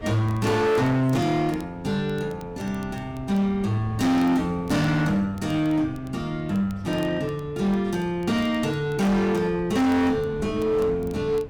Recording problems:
distorted audio; hard clipping, signal-to-distortion ratio 8 dB
wind on the microphone; below 300 Hz, SNR 18 dB
crackle; vinyl, SNR 30 dB

